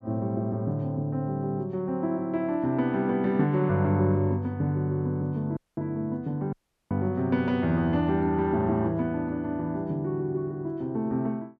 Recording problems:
dropout; at 5.5 s and at 6.5 s

